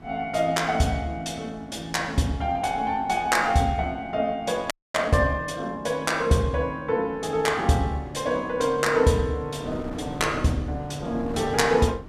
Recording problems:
wind noise; below 450 Hz, SNR 17 dB
frozen audio; at 4.5 s

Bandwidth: 14.5 kHz